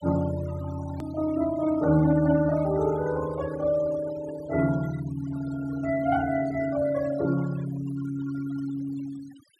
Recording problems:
denoising artefacts; signal-to-artefact ratio 17 dB
click at an edit; at 1 s

